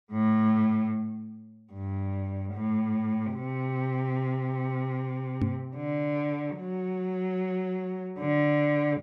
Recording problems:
knock on the microphone; at 5.5 s; peak +5 dB vs average level

